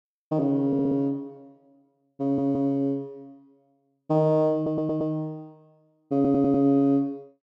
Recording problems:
audio stuttering; 4 times, first at 0.5 s

